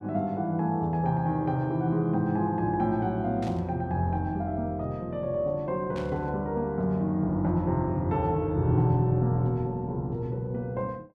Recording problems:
burst of static; at 3.5 s and at 6 s; peak -13 dB vs average level

